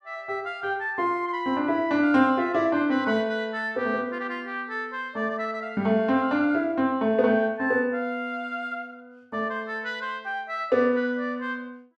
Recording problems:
none

